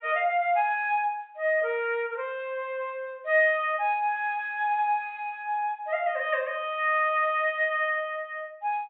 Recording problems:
treble cut off; nothing above 4 kHz

